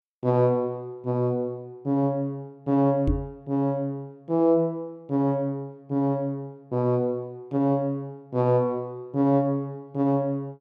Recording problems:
microphone thump; at 3 s; peak +4 dB vs average level

